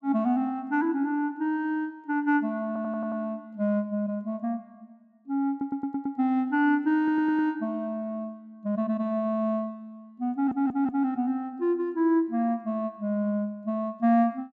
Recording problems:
audio stuttering; 4 times, first at 2.5 s

